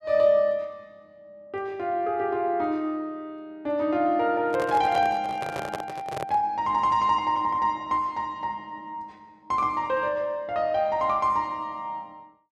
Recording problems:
handling noise; from 4.5 to 6.5 s; peak -3 dB vs average level

